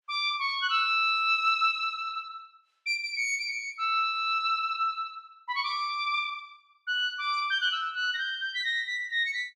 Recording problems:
none

